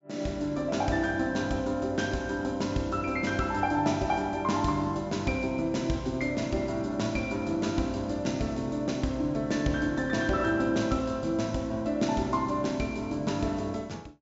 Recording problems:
low-pass filter; nothing above 8 kHz

